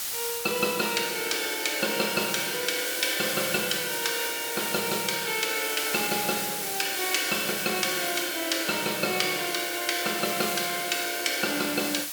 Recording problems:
background hiss; slope +2 dB per octave, SNR 3 dB

